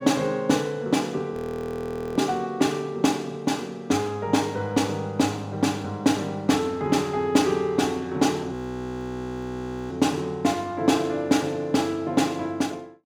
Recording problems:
frozen audio; at 1.5 s for 1 s and at 8.5 s for 1.5 s

